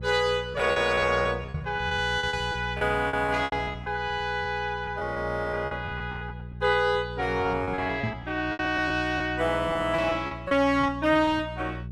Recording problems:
hum; 60 Hz, harmonics up to 420 Hz, SNR 13 dB
lost packets; 13% of the sound replaced, filled with repeated pitch periods
microphone bump; at 1.5 s and at 8 s; peak -1 dB vs average level

